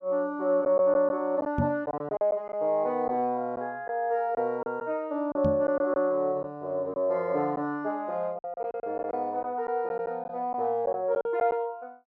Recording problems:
packet loss; 6% of the sound replaced, filled with silence
knock on the microphone; at 1.5 s and at 5.5 s; peak +4 dB vs average level

